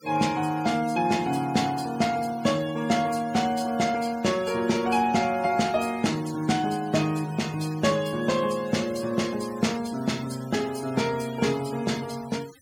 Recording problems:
denoising artefacts; signal-to-artefact ratio 18 dB

